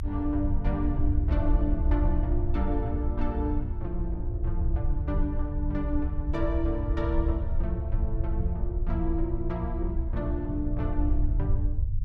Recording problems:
low-frequency rumble; below 70 Hz, SNR -2 dB

